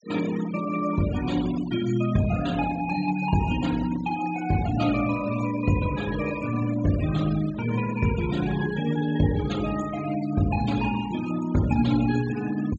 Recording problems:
treble cut off; nothing above 8 kHz
noise reduction artefacts; signal-to-artefact ratio 14 dB

